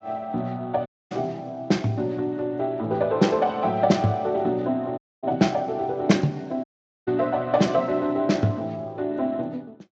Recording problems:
codec artefacts; Speex, log-spectral distance 2 dB
audio cutting out; at 1 s, at 5 s and at 6.5 s

